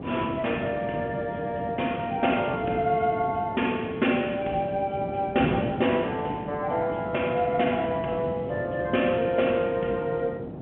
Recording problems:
phone line; 220 Hz to 3.3 kHz, G.711
wind on the microphone; below 440 Hz, SNR 9 dB

